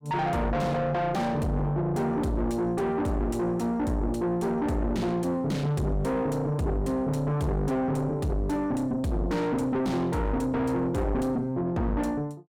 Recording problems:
distortion; soft clipping, signal-to-distortion ratio 6 dB

